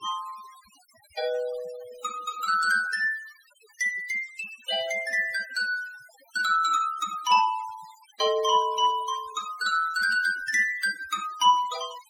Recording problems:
noise reduction artefacts; signal-to-artefact ratio 19 dB

